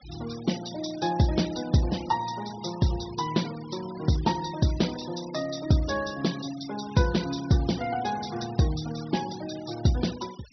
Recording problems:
treble missing; nothing above 5.9 kHz
noise reduction artefacts; signal-to-artefact ratio 16 dB

